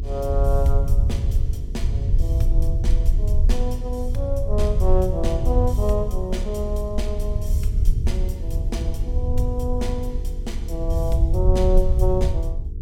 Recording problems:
mains hum; 50 Hz, harmonics up to 450 Hz, SNR 13 dB
rumble; below 70 Hz, SNR -5 dB

